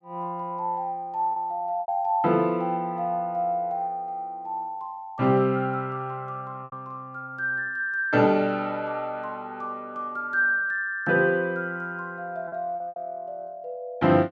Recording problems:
packet loss; 3% of the sound replaced, filled with repeated pitch periods

